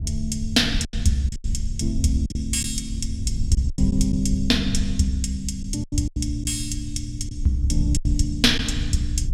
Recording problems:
low-frequency rumble; below 76 Hz, SNR 6 dB
packet loss; 7% of the sound replaced, filled with silence

